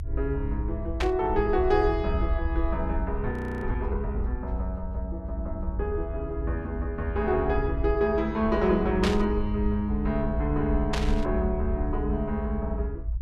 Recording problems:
rumble; below 70 Hz, SNR 4 dB
burst of static; at 1 s, at 9 s and at 11 s; peak +3 dB vs average level
audio freezing; at 3.5 s

